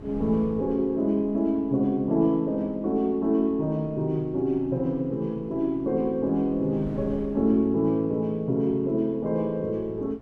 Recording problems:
wind on the microphone; below 300 Hz, SNR 20 dB

